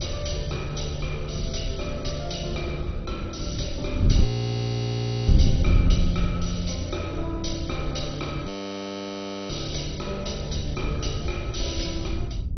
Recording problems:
lossy compression; MP2, log-spectral distance 5 dB, nothing above 6 kHz
wind noise; below 120 Hz, SNR -1 dB
audio freezing; at 4 s for 1 s and at 8.5 s for 1 s

